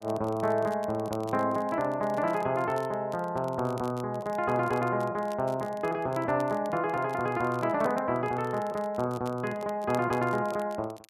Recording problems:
crackle; vinyl, SNR 24 dB

